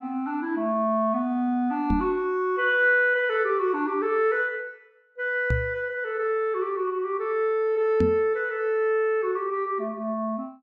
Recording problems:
knock on the microphone; at 2 s, at 5.5 s and at 8 s; peak +3 dB vs average level

